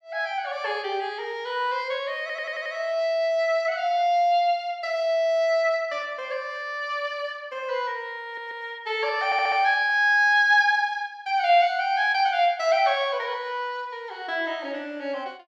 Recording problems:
stutter; at 2 s, at 8 s and at 9.5 s

